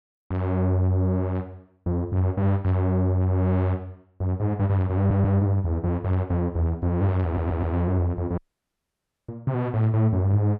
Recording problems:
audio stuttering; at 5 s and at 7 s
audio cutting out; at 8.5 s for 1 s

